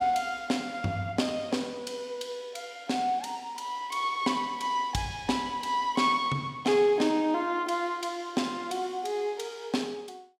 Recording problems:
none

